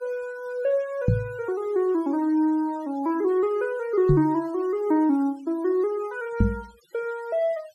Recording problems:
denoising artefacts; signal-to-artefact ratio 27 dB
knock on the microphone; at 1 s, at 4 s and at 6.5 s; peak +7 dB vs average level

